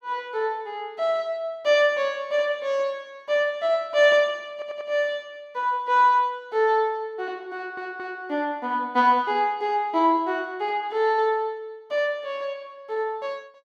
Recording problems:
audio stuttering; at 4.5 s and at 7.5 s

